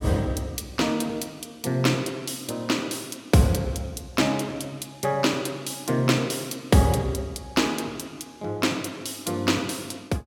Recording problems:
none

